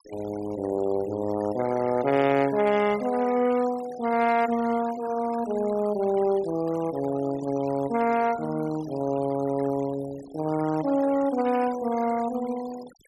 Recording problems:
noise reduction artefacts; signal-to-artefact ratio 18 dB

